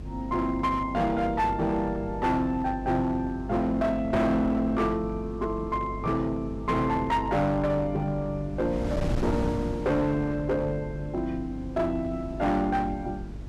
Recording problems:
distorted audio; hard clipping, uneven, signal-to-distortion ratio 10 dB
hum; 50 Hz, harmonics up to 450 Hz, SNR 13 dB
wind on the microphone; below 260 Hz, SNR 13 dB

